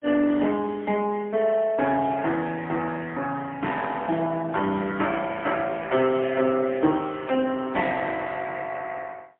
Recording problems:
telephone audio; 170 Hz to 3.3 kHz, AMR-NB, then MP3

